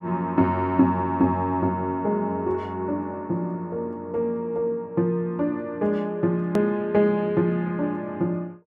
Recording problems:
hard cut with a click; at 6.5 s

